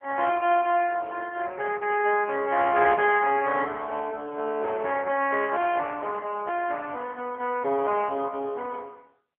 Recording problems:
phone line; 240 Hz to 3.3 kHz, AMR-NB

